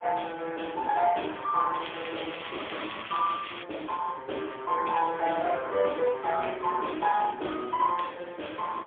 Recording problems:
telephone audio; 280 Hz to 3.4 kHz, AMR-NB, then MP3
crackle; from 2 to 3.5 s; loose cable, SNR 10 dB

